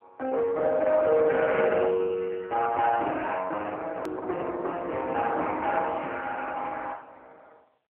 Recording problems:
telephone audio; 320 Hz to 3.2 kHz, AMR-NB
distortion; soft clipping, signal-to-distortion ratio 11 dB
hard cut with a click; at 4 s

